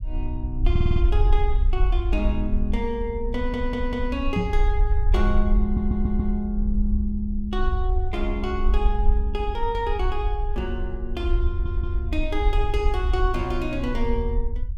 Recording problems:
rumble; below 60 Hz, SNR -2 dB
stutter; 4 times, first at 0.5 s
microphone thump; at 4.5 s; peak +7 dB vs average level

